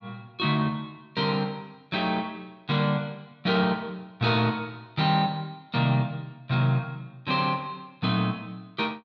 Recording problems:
none

